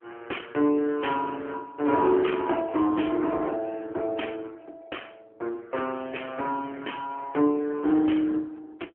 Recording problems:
telephone audio; 240 Hz to 3.2 kHz, AMR-NB

